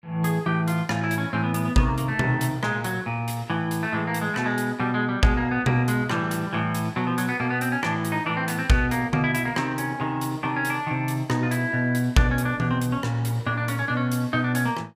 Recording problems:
none

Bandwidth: 15.5 kHz